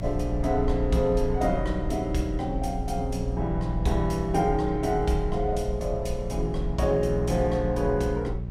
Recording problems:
hum; 60 Hz, harmonics up to 420 Hz, SNR 7 dB
rumble; below 50 Hz, SNR 8 dB

